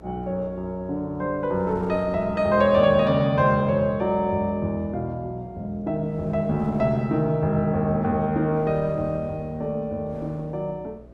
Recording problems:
electrical hum; 60 Hz, harmonics up to 660 Hz, SNR 24 dB
wind noise; below 600 Hz, SNR 21 dB

